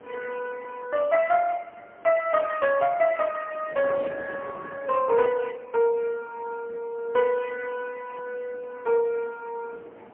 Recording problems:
phone line; 130 Hz to 2.8 kHz, AMR-NB, then MP3
wind on the microphone; below 860 Hz, SNR 20 dB

